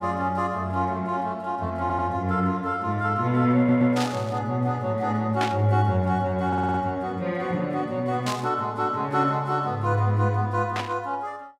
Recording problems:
stutter; at 2 s, at 3.5 s and at 6.5 s
static burst; 4 times, first at 4 s; peak -1 dB vs average level

